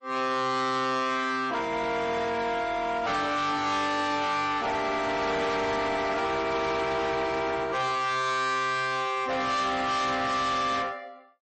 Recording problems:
lossy codec; MP3, then MP3, log-spectral distance 3 dB, nothing above 8.2 kHz
distortion; hard clipping, uneven, signal-to-distortion ratio 6 dB

